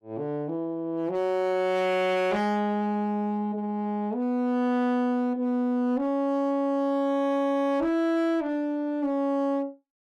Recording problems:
distortion; hard clipping, uneven, signal-to-distortion ratio 10 dB

